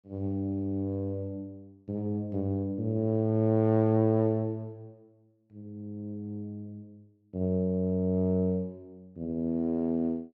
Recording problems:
none

